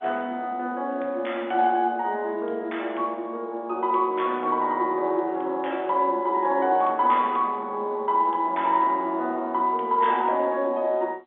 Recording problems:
phone line; 260 Hz to 3.6 kHz, G.711

